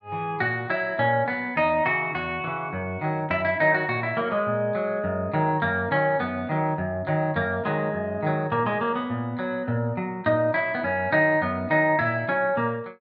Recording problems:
none

